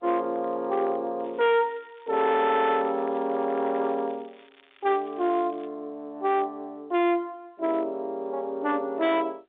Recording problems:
telephone audio; 240 Hz to 3.7 kHz, G.711
distortion; hard clipping, signal-to-distortion ratio 11 dB
crackle; from 1 to 2.5 s and from 2.5 to 5.5 s; loose cable, SNR 30 dB

